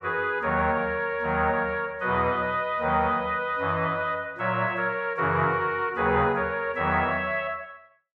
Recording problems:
none

